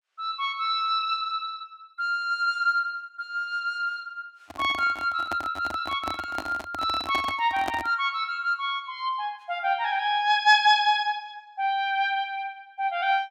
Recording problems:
handling noise; from 4.5 to 8 s; peak -1 dB vs average level

